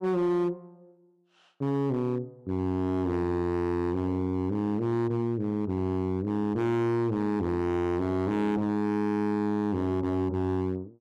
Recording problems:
distorted audio; hard clipping, signal-to-distortion ratio 7 dB

